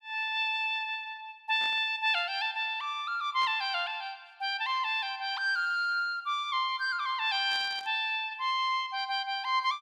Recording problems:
burst of static; at 1.5 s, at 3.5 s and at 7.5 s; peak -12 dB vs average level

